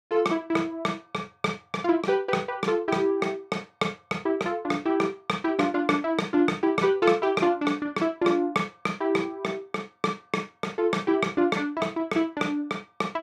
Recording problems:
none

